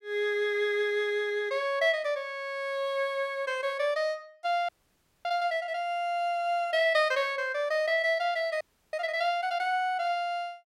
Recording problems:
audio freezing; at 4.5 s for 0.5 s and at 8.5 s

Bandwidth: 16 kHz